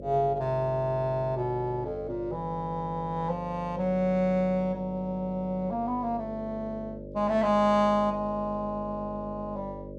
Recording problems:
hum; 50 Hz, harmonics up to 600 Hz, SNR 12 dB

